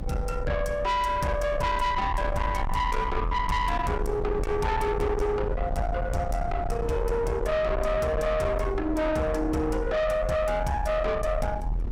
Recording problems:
distortion; soft clipping, signal-to-distortion ratio 7 dB
low-frequency rumble; below 570 Hz, SNR 4 dB

